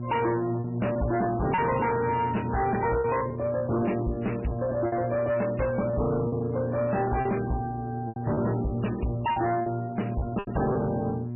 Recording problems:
lossy compression; MP3, log-spectral distance 4 dB, nothing above 2.8 kHz
distorted audio; hard clipping, signal-to-distortion ratio 7 dB
hum; 60 Hz, harmonics up to 720 Hz, SNR 6 dB
packet loss; 6% of the sound replaced, filled with repeated pitch periods

